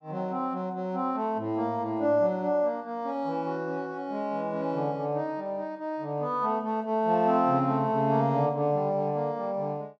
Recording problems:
none

